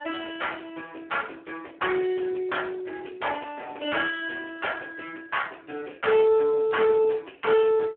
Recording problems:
phone line; 260 Hz to 3.2 kHz, Speex
distorted audio; soft clipping, signal-to-distortion ratio 8 dB

